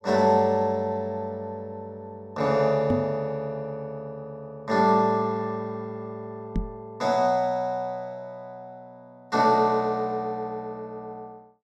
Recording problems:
microphone thump; at 3 s and at 6.5 s; peak +3 dB vs average level

